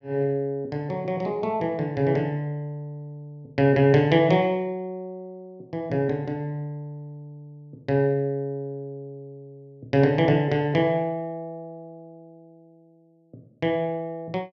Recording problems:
none

